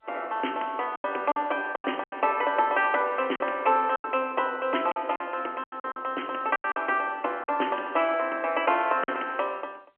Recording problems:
telephone audio; 240 Hz to 3.2 kHz, G.711
packet loss; 9% of the sound replaced, filled with silence

